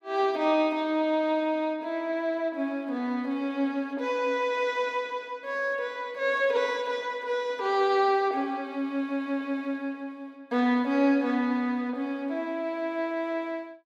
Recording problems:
none

